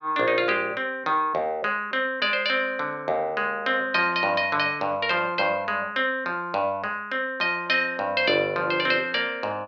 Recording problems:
none

